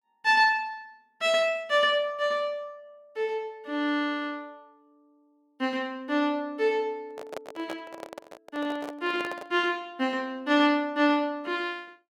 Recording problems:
handling noise; from 7 to 9.5 s; peak -6 dB vs average level

